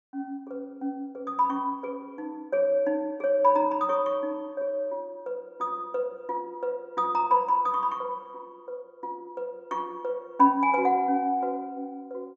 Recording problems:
treble missing; nothing above 8 kHz

